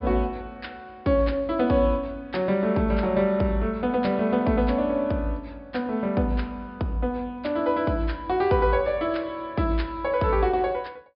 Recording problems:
treble missing; nothing above 5.2 kHz

